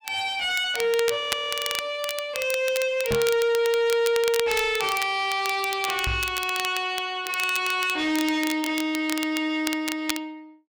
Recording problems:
distortion; soft clipping, signal-to-distortion ratio 10 dB
crackling; vinyl, SNR 9 dB
frozen audio; at 1 s for 0.5 s
microphone bump; at 3 s and at 6 s; peak +1 dB vs average level

